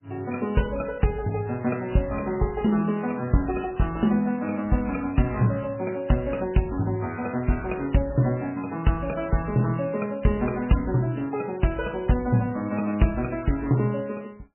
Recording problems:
codec artefacts; MP3, log-spectral distance 4 dB, nothing above 2.9 kHz

